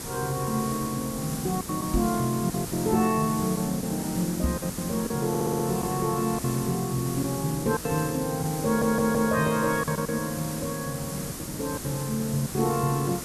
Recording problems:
background hiss; SNR 7 dB
lost packets; 7% of the sound replaced, filled with silence
microphone thump; at 2 s and at 4.5 s; peak +3 dB vs average level
audio stuttering; at 5.5 s and at 8.5 s

